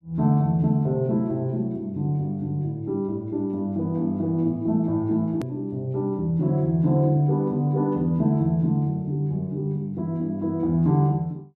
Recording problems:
click at an edit; at 5.5 s

